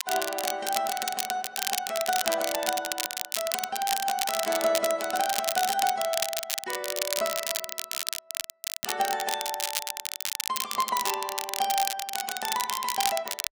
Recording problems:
codec artefacts; AAC, log-spectral distance 2 dB
crackling; vinyl, SNR 1 dB

